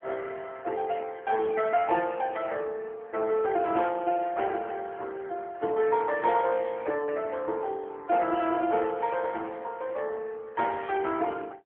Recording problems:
phone line; 300 Hz to 2.8 kHz, AMR-NB

